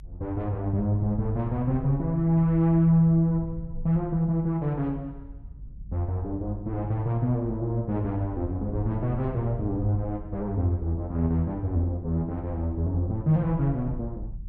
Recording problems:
low-frequency rumble; below 86 Hz, SNR 14 dB

